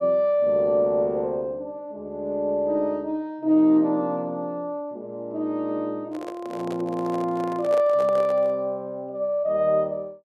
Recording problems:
handling noise; from 6 to 8.5 s; peak -6 dB vs average level

